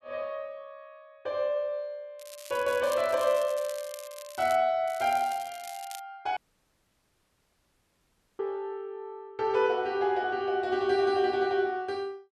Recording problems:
crackling; from 2 to 4.5 s and from 5 to 6 s; loose cable, SNR 17 dB
audio cutting out; at 6.5 s for 2 s

